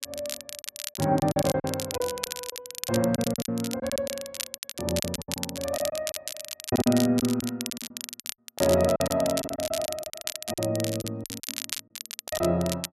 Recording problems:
crackling; vinyl, SNR 7 dB
packet loss; 14% of the sound replaced, filled with silence

